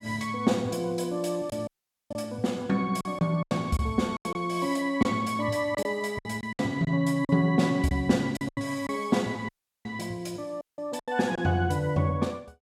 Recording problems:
lost packets; 7% of the sound replaced, filled with silence
dropout; at 1.5 s, at 9.5 s and at 11 s

